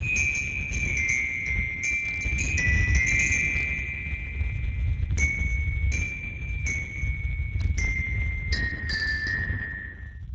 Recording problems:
lossy compression; Speex, log-spectral distance 3 dB, nothing above 6.7 kHz
low-frequency rumble; below 110 Hz, SNR 5 dB
burst of static; 4 times, first at 2 s; peak -15 dB vs average level

